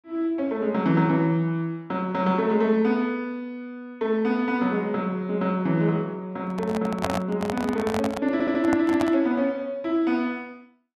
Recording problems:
handling noise; from 6.5 to 9 s; peak +2 dB vs average level
audio stuttering; at 8.5 s

